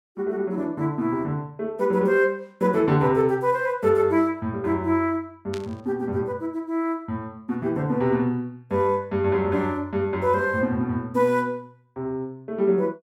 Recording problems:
burst of static; at 5.5 s; peak -9 dB vs average level

